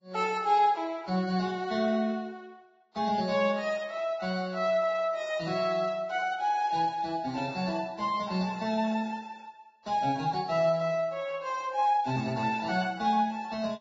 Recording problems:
lossy codec; Vorbis, log-spectral distance 3 dB

